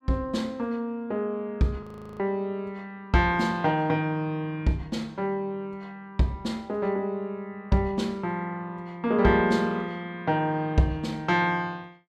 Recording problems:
audio freezing; at 2 s

